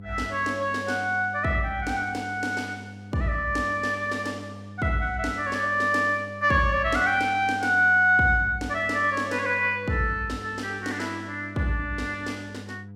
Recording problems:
electrical hum; 50 Hz, harmonics up to 700 Hz, SNR 17 dB

